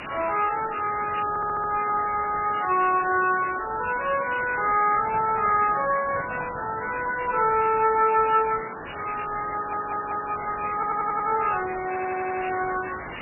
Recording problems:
codec artefacts; MP3, log-spectral distance 21 dB, nothing above 2.6 kHz
hiss; SNR 11 dB
stutter; 4 times, first at 1.5 s
microphone handling noise; from 5 to 7 s; peak -9 dB vs average level

